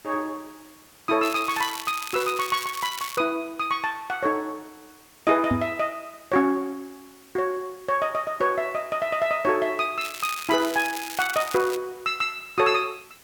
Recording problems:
background hiss; slope -1 dB per octave, SNR 25 dB
crackling; from 1 to 3 s and from 10 to 12 s; loose cable, SNR 10 dB
knock on the microphone; at 5.5 s; peak +4 dB vs average level

